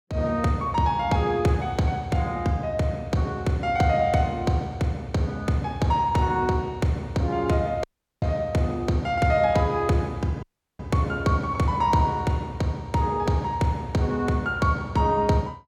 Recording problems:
dropout; at 8 s and at 10 s

